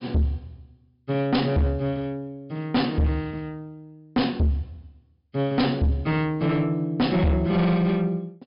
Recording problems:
treble cut off; nothing above 5.5 kHz
distorted audio; soft clipping, signal-to-distortion ratio 6 dB

